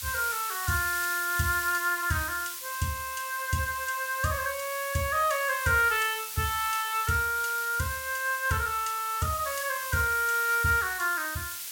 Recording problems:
hiss; slope +4 dB per octave, SNR 7 dB

